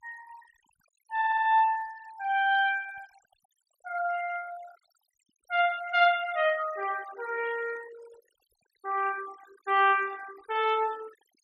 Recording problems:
noise reduction artefacts; signal-to-artefact ratio 20 dB
audio stuttering; at 1 s

